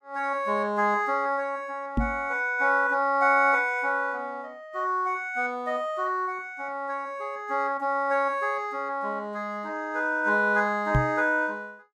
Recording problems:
microphone thump; at 2 s and at 11 s; peak +5 dB vs average level

